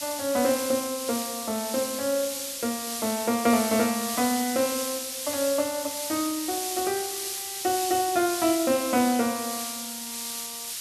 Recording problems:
background hiss; slope +5 dB per octave, SNR 4 dB

